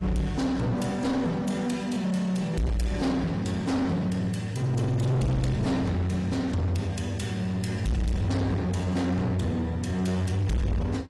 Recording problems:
codec artefacts; AAC, log-spectral distance 2 dB
distorted audio; soft clipping, signal-to-distortion ratio 6 dB

